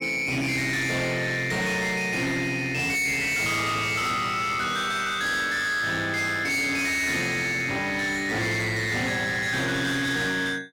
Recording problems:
distorted audio; hard clipping, uneven, signal-to-distortion ratio 7 dB

